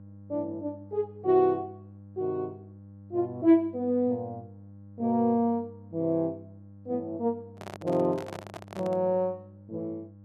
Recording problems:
electrical hum; 50 Hz, harmonics up to 600 Hz, SNR 20 dB
microphone handling noise; from 7.5 to 9 s; peak -8 dB vs average level

